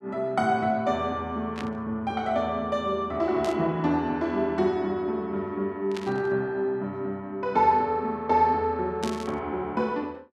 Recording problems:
burst of static; 4 times, first at 1.5 s; peak -5 dB vs average level

